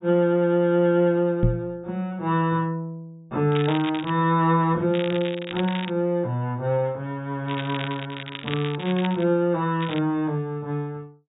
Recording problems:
treble missing; nothing above 4 kHz
knock on the microphone; at 1.5 s; peak +6 dB vs average level
crackling; 4 times, first at 3.5 s; loose cable, SNR 12 dB

